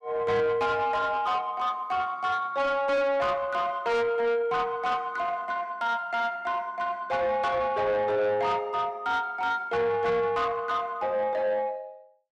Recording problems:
distorted audio; soft clipping, signal-to-distortion ratio 10 dB

